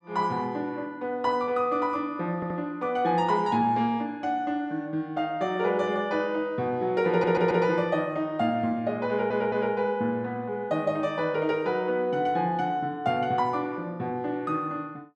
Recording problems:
stutter; at 2.5 s, at 7 s and at 9 s

